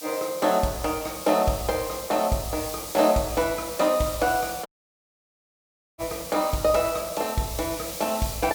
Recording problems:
hiss; slope +4 dB per octave, SNR 10 dB
dropout; at 4.5 s for 1.5 s

